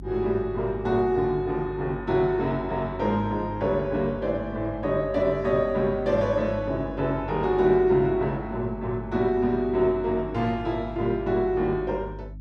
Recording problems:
hum; 50 Hz, harmonics up to 300 Hz, SNR 15 dB

